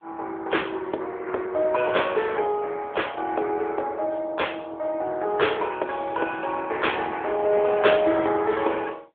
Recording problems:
phone line; 300 Hz to 3.5 kHz, AMR-NB

